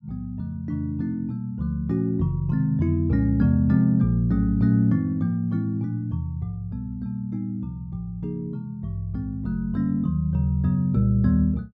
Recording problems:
none

